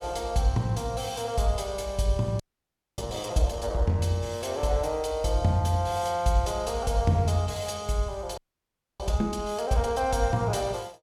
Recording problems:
frozen audio; at 2.5 s for 0.5 s and at 8.5 s for 0.5 s

